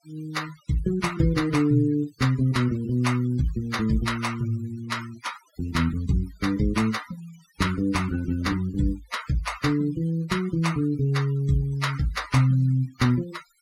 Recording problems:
denoising artefacts; signal-to-artefact ratio 17 dB

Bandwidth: 16.5 kHz